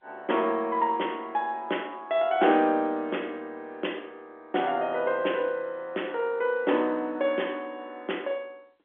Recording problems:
telephone audio; 240 Hz to 3.4 kHz, G.711

